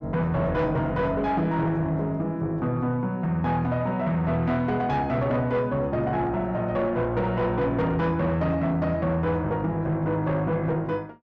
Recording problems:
distorted audio; soft clipping, signal-to-distortion ratio 11 dB

